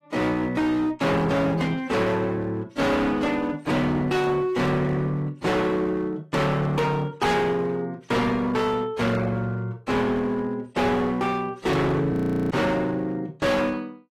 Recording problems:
codec artefacts; AAC, log-spectral distance 2 dB
distortion; hard clipping, uneven, signal-to-distortion ratio 6 dB
frozen audio; at 12 s

